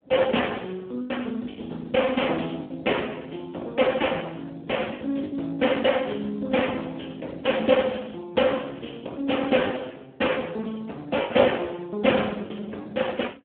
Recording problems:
telephone audio; 240 Hz to 3.4 kHz, Speex
lost packets; 5% of the sound replaced, filled with the last packet

